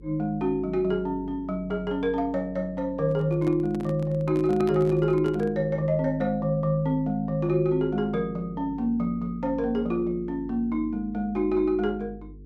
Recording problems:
hum; 50 Hz, harmonics up to 450 Hz, SNR 19 dB
handling noise; from 3 to 5.5 s; peak -5 dB vs average level

